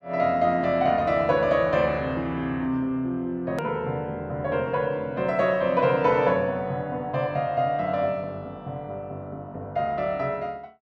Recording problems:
click at an edit; at 3.5 s

